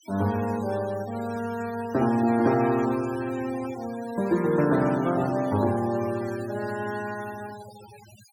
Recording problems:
denoising artefacts; signal-to-artefact ratio 18 dB

